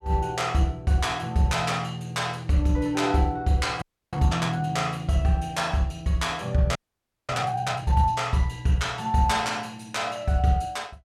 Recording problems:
frozen audio; at 4 s and at 7 s for 0.5 s

